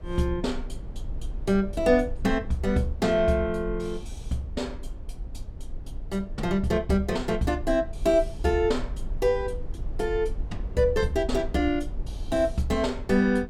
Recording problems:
rumble; below 56 Hz, SNR 12 dB

